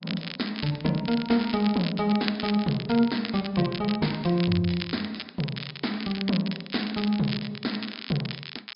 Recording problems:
low-pass filter; nothing above 5.2 kHz
codec artefacts; MP3, log-spectral distance 2 dB
crackle; vinyl, SNR 10 dB

